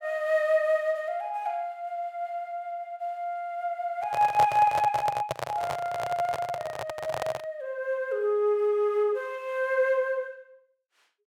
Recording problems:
microphone handling noise; from 4 to 7.5 s; peak +2 dB vs average level

